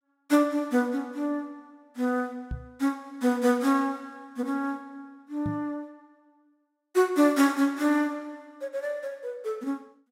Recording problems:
microphone thump; at 2.5 s and at 5.5 s; peak -2 dB vs average level

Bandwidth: 16 kHz